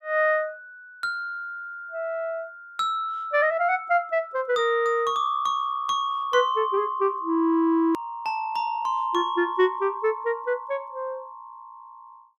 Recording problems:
edit click; at 8 s

